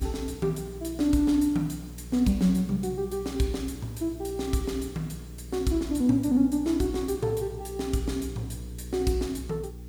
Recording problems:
hum; 60 Hz, harmonics up to 480 Hz, SNR 14 dB
background hiss; slope -1 dB per octave, SNR 27 dB

